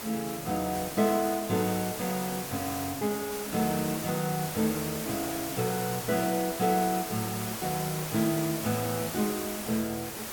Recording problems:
background hiss; slope -3 dB per octave, SNR 5 dB

